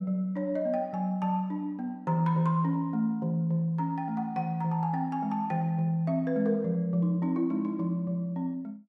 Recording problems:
none

